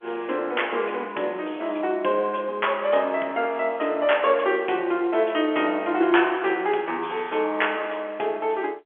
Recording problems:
phone line; 280 Hz to 3.4 kHz, G.711

